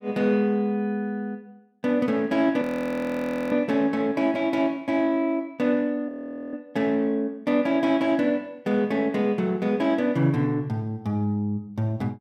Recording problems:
audio freezing; at 2.5 s for 1 s and at 6 s

